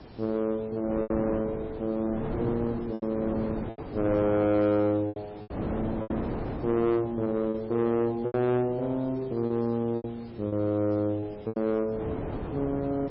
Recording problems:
lossy codec; MP3, log-spectral distance 4 dB
distorted audio; soft clipping, signal-to-distortion ratio 12 dB
hiss; SNR 29 dB
wind noise; below 560 Hz, SNR 8 dB
packet loss; 7% of the sound replaced, filled with repeated pitch periods

